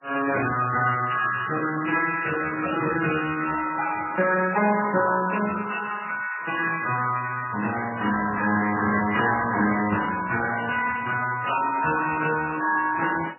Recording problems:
codec artefacts; Speex, then MP3, log-spectral distance 6 dB, nothing above 2.5 kHz

